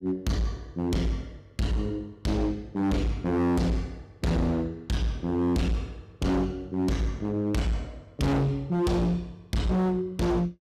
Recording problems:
distorted audio; hard clipping, signal-to-distortion ratio 6 dB

